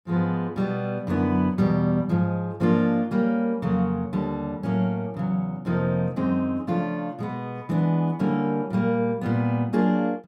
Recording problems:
none

